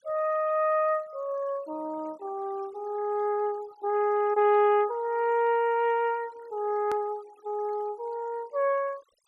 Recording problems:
noise reduction artefacts; signal-to-artefact ratio 26 dB
edit click; at 7 s

